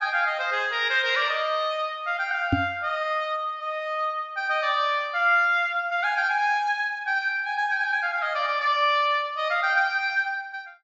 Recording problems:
low-pass filter; nothing above 8 kHz
microphone bump; at 2.5 s; peak +5 dB vs average level

